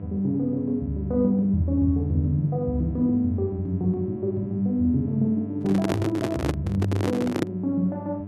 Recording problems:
mains hum; 50 Hz, harmonics up to 1 kHz, SNR 12 dB
handling noise; from 5.5 to 7.5 s; peak +3 dB vs average level

